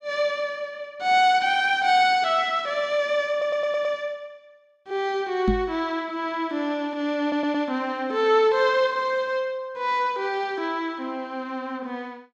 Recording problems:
stutter; at 3.5 s and at 7 s
microphone bump; at 5.5 s; peak +4 dB vs average level

